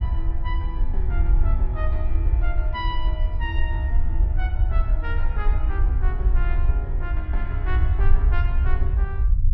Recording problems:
treble cut off; nothing above 5.8 kHz
low-frequency rumble; below 62 Hz, SNR -11 dB

